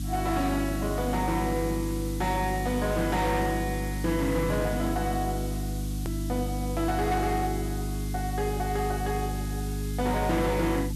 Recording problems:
distorted audio; hard clipping, uneven, signal-to-distortion ratio 12 dB
hum; 50 Hz, harmonics up to 300 Hz, SNR 3 dB
hiss; slope +4 dB per octave, SNR 13 dB
hard cut with a click; at 6 s

